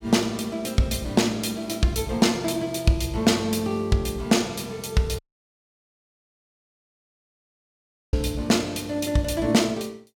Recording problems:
dropout; at 5 s for 3 s

